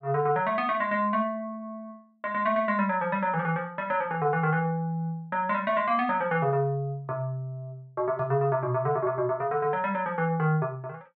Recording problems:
none

